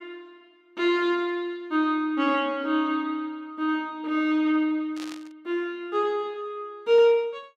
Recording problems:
burst of static; at 5 s; peak -11 dB vs average level

